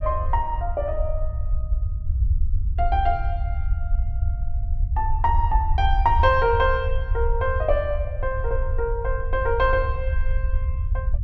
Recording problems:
low-frequency rumble; below 74 Hz, SNR 2 dB

